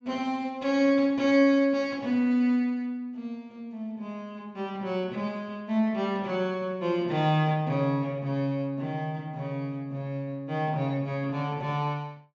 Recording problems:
low-pass filter; nothing above 8 kHz

